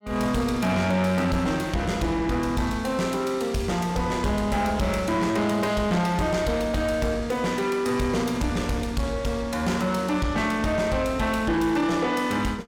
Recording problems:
distorted audio; soft clipping, signal-to-distortion ratio 11 dB

